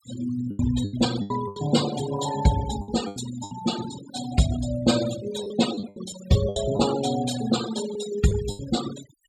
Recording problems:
denoising artefacts; signal-to-artefact ratio 9 dB
lost packets; 10% of the sound replaced, filled with the last packet

